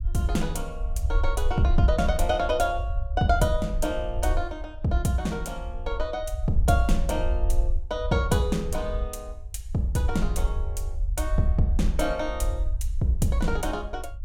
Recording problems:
rumble; below 60 Hz, SNR 3 dB

